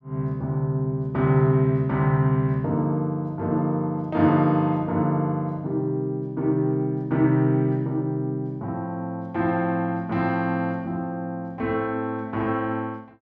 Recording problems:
none

